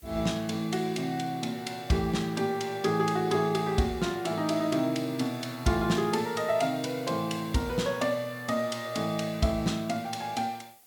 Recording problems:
background hiss; slope -1 dB per octave, SNR 24 dB

